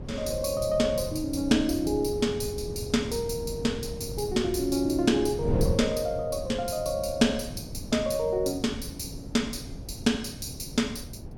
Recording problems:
wind noise; below 240 Hz, SNR 9 dB

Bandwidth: 17.5 kHz